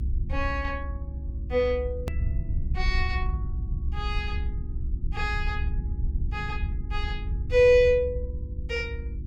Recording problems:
hum; 50 Hz, harmonics up to 350 Hz, SNR 16 dB
rumble; below 70 Hz, SNR 5 dB
edit click; at 2 s

